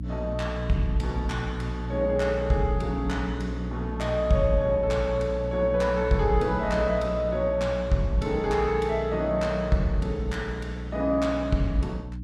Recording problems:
mains hum; 60 Hz, harmonics up to 300 Hz, SNR 7 dB

